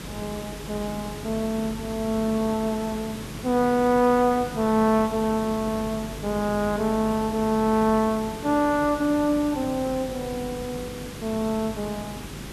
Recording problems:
electrical hum; 50 Hz, harmonics up to 300 Hz, SNR 18 dB
background hiss; SNR 12 dB

